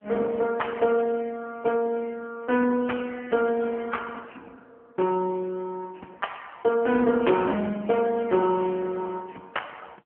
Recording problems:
telephone audio; 190 Hz to 3.2 kHz, AMR-NB

